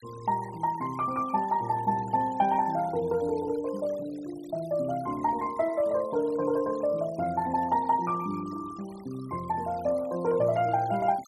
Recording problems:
denoising artefacts; signal-to-artefact ratio 22 dB

